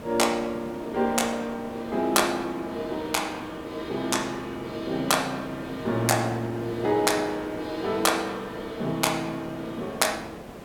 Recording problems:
background hiss; slope -8 dB per octave, SNR 13 dB

